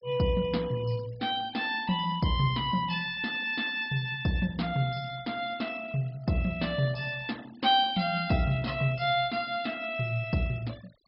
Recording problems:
treble cut off; nothing above 5.3 kHz
denoising artefacts; signal-to-artefact ratio 22 dB

